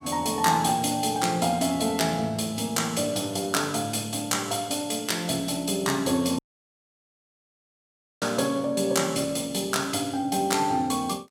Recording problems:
audio cutting out; at 6.5 s for 2 s

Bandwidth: 17 kHz